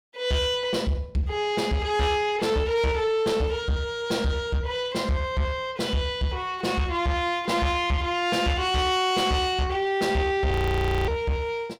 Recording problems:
distortion; soft clipping, signal-to-distortion ratio 10 dB
audio freezing; at 11 s for 0.5 s

